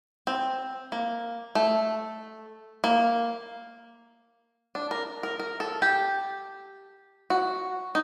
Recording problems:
none

